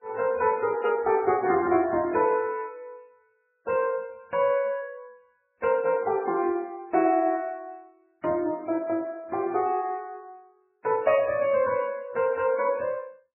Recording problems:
codec artefacts; MP3, then MP3, log-spectral distance 2 dB, nothing above 2.5 kHz

